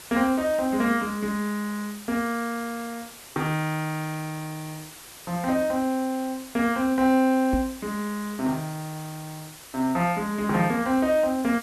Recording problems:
hiss; slope -1 dB per octave, SNR 16 dB
knock on the microphone; at 7.5 s; peak +2 dB vs average level

